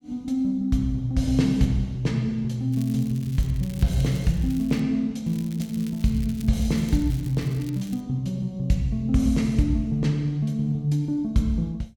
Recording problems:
crackling; from 2.5 to 5 s and from 5.5 to 8 s; loose cable, SNR 22 dB

